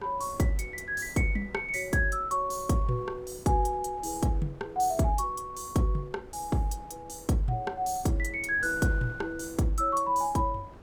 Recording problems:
wind noise; below 510 Hz, SNR 20 dB

